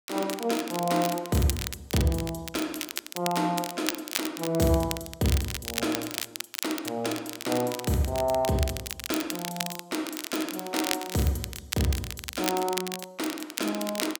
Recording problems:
crackle; vinyl, SNR 5 dB

